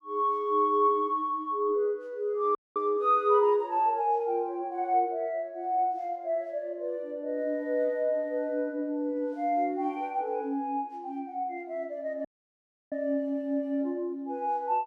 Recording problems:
audio cutting out; at 2.5 s and at 12 s for 0.5 s

